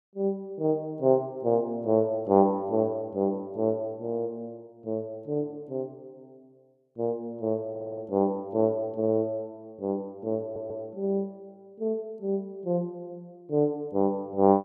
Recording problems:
audio stuttering; at 7.5 s and at 10 s

